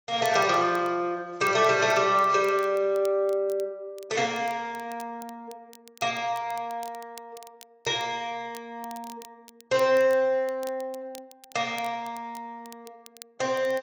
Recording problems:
lossy compression; AAC, log-spectral distance 2 dB
crackling; vinyl, SNR 24 dB

